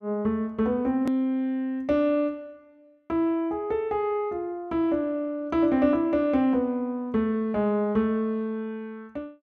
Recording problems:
click at an edit; at 1 s

